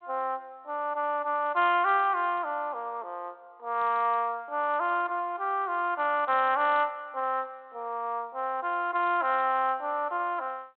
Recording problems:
telephone audio; 260 Hz to 3.5 kHz, G.726

